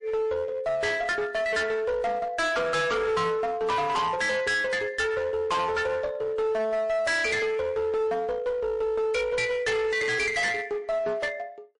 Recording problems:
lossy compression; MP3, log-spectral distance 2 dB, nothing above 10.4 kHz
distorted audio; hard clipping, uneven, signal-to-distortion ratio 7 dB

